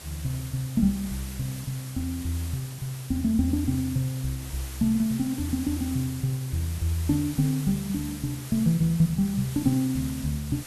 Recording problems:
background hiss; slope -1 dB per octave, SNR 13 dB

